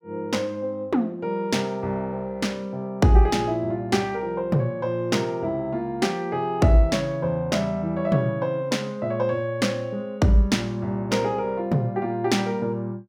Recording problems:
none

